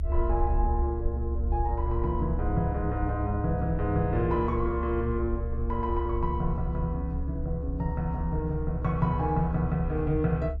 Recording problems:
electrical hum; 60 Hz, harmonics up to 420 Hz, SNR 19 dB
rumble; below 70 Hz, strongest tone 68 Hz, SNR 3 dB

